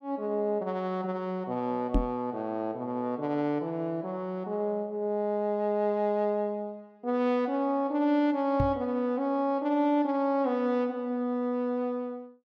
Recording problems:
knock on the microphone; at 2 s and at 8.5 s; peak +6 dB vs average level

